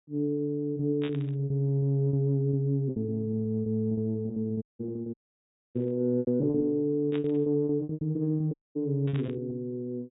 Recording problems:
treble missing; nothing above 4 kHz
packet loss; 16% of the sound replaced, filled with repeated pitch periods
burst of static; 4 times, first at 1 s; peak -8 dB vs average level
dropout; at 4.5 s, at 5 s for 0.5 s and at 8.5 s

